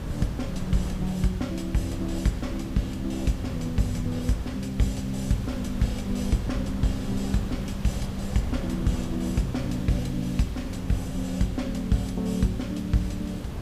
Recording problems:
hiss; slope -1 dB per octave, SNR 19 dB
wind on the microphone; below 200 Hz, SNR 8 dB

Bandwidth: 15 kHz